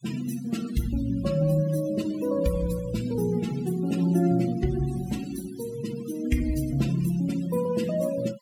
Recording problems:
denoising artefacts; signal-to-artefact ratio 15 dB

